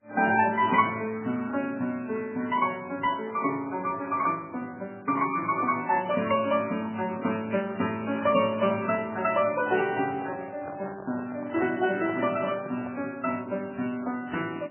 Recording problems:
codec artefacts; MP3, then MP3, log-spectral distance 4 dB, nothing above 2.7 kHz
microphone handling noise; from 10 to 13 s; peak -6 dB vs average level

